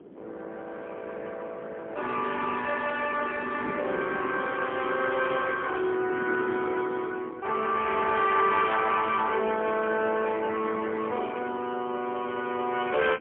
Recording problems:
phone line; 260 Hz to 3.5 kHz, AMR-NB, then MP3
wind noise; below 470 Hz, SNR 15 dB

